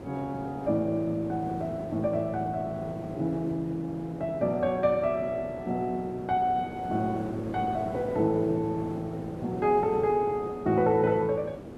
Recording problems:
hiss; slope -11 dB per octave, SNR 11 dB

